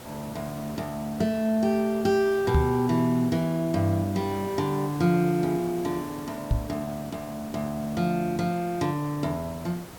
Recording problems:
hiss; slope -5 dB per octave, SNR 15 dB
microphone thump; at 2.5 s and at 6.5 s; peak +7 dB vs average level

